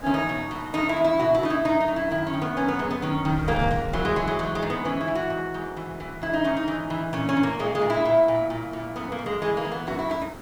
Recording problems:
background hiss; SNR 19 dB
wind noise; below 180 Hz, SNR 15 dB

